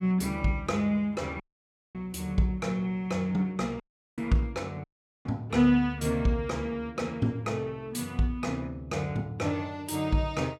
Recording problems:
audio cutting out; at 1.5 s for 0.5 s, at 4 s and at 5 s

